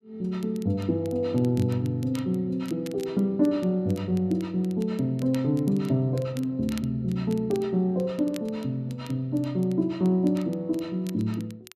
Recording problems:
crackling; vinyl, SNR 24 dB

